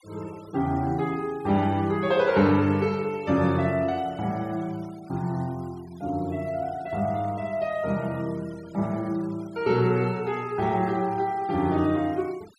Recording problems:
noise reduction artefacts; signal-to-artefact ratio 24 dB

